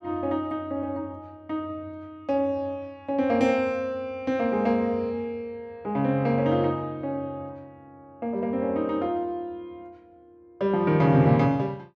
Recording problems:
none

